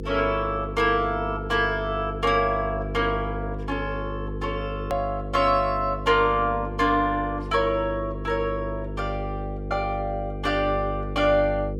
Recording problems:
hum; 50 Hz, harmonics up to 500 Hz, SNR 8 dB
hard cut with a click; at 5 s

